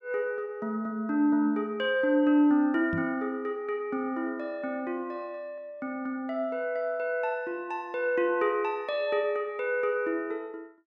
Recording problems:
knock on the microphone; at 3 s; peak -2 dB vs average level

